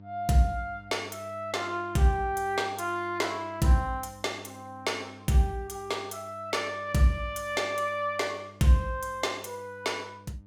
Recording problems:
electrical hum; 50 Hz, harmonics up to 900 Hz, SNR 21 dB

